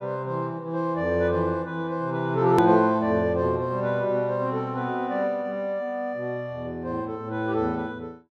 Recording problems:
click at an edit; at 2.5 s

